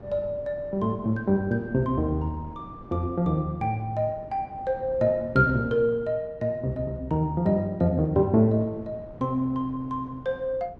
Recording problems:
wind noise; below 390 Hz, SNR 20 dB

